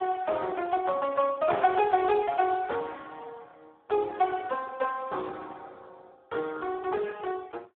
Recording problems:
telephone audio; 320 Hz to 3.7 kHz, Speex

